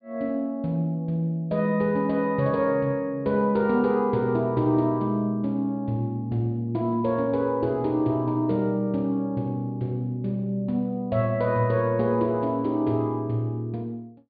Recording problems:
treble missing; nothing above 4.7 kHz

